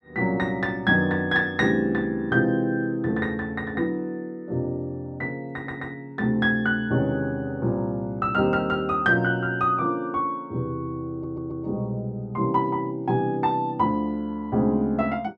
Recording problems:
audio stuttering; at 5.5 s and at 11 s

